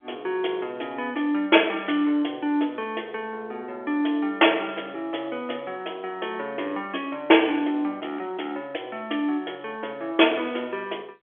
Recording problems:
telephone audio; 260 Hz to 3.4 kHz, G.711

